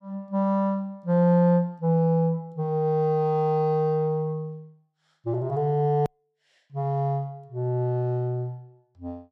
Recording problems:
hard cut with a click; at 6 s

